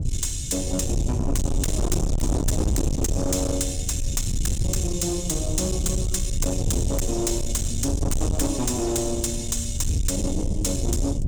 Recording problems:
distortion; soft clipping, signal-to-distortion ratio 6 dB
low-frequency rumble; below 130 Hz, SNR 2 dB

